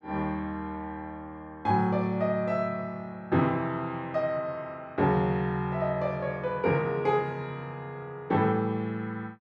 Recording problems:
none

